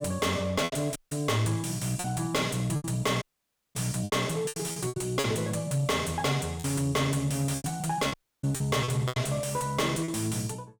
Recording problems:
distortion; soft clipping, signal-to-distortion ratio 6 dB
packet loss; 9% of the sound replaced, filled with repeated pitch periods
audio cutting out; at 1 s, at 3 s for 0.5 s and at 8 s

